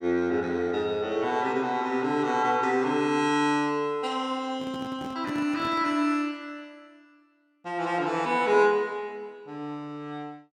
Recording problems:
microphone handling noise; from 4.5 to 6 s; peak -6 dB vs average level

